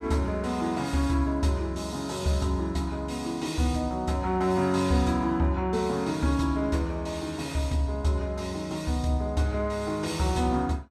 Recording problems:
none

